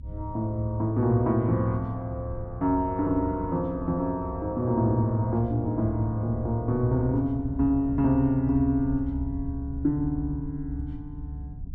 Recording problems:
rumble; below 96 Hz, strongest tone 68 Hz, SNR 11 dB

